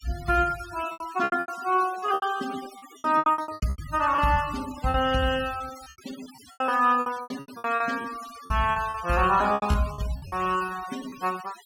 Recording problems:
denoising artefacts; signal-to-artefact ratio 17 dB
packet loss; 17% of the sound replaced, filled with repeated pitch periods

